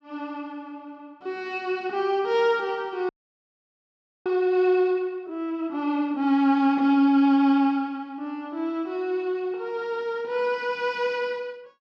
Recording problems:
frozen audio; at 3 s for 1 s

